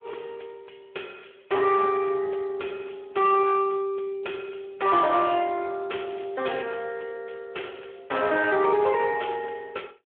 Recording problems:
phone line; 320 Hz to 3.4 kHz, Speex
distorted audio; soft clipping, signal-to-distortion ratio 11 dB

